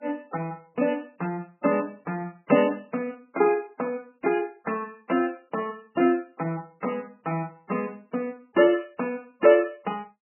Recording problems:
codec artefacts; MP3, log-spectral distance 4 dB, nothing above 2.4 kHz

